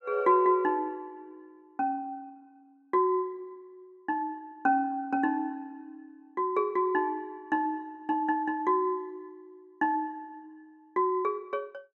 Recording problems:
none

